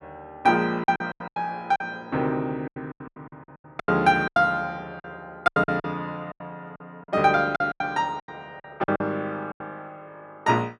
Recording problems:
lost packets; 15% of the sound replaced, filled with silence

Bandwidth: 12.5 kHz